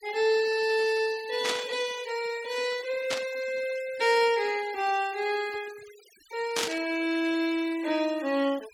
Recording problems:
denoising artefacts; signal-to-artefact ratio 18 dB
burst of static; at 1.5 s, at 3 s and at 6.5 s; peak +3 dB vs average level

